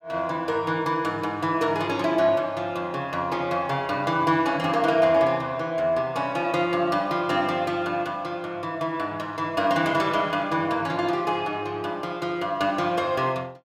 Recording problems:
none

